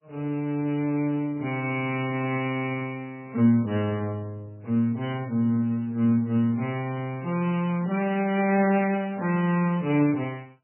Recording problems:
lossy codec; Speex, then MP3, log-spectral distance 3 dB, nothing above 2.9 kHz

